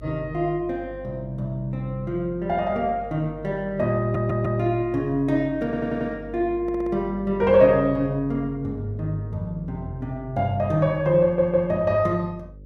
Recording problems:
hum; 50 Hz, harmonics up to 550 Hz, SNR 18 dB
stutter; 4 times, first at 4 s

